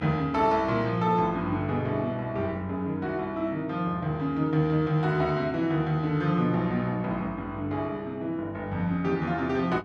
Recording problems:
electrical hum; 50 Hz, harmonics up to 2.2 kHz, SNR 20 dB

